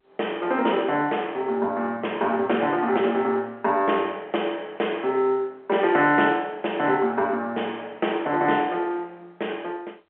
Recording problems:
phone line; 300 Hz to 3.3 kHz, G.711

